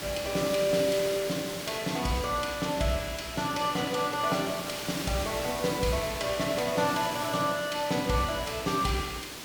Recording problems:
hiss; SNR 8 dB

